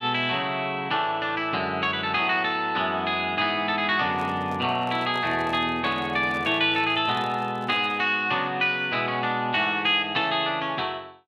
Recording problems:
handling noise; from 4 to 8 s; peak -10 dB vs average level

